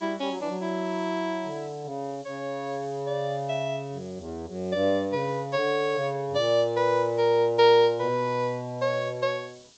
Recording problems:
treble missing; nothing above 8 kHz
hiss; SNR 27 dB

